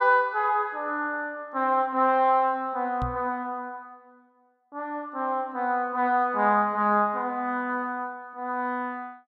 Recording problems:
microphone bump; at 3 s; peak -3 dB vs average level

